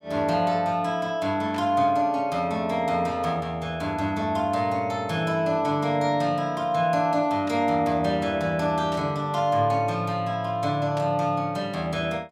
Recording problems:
static burst; 4 times, first at 1.5 s; peak -11 dB vs average level

